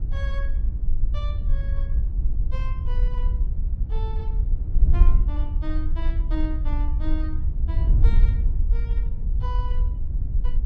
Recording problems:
wind noise; below 56 Hz, SNR -14 dB

